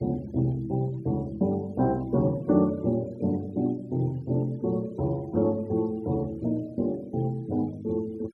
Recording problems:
noise reduction artefacts; signal-to-artefact ratio 27 dB

